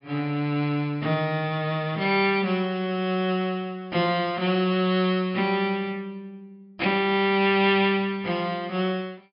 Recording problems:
treble cut off; nothing above 5.5 kHz

